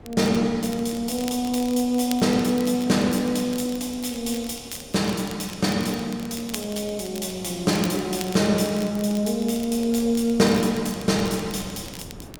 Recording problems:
wind on the microphone; below 410 Hz, SNR 22 dB
crackling; vinyl, SNR 17 dB

